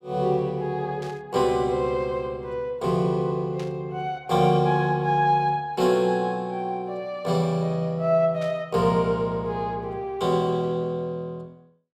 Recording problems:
static burst; at 1 s, at 3.5 s and at 8.5 s; peak -14 dB vs average level

